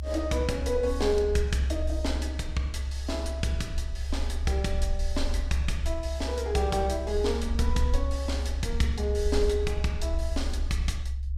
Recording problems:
rumble; below 68 Hz, strongest tone 68 Hz, SNR 2 dB

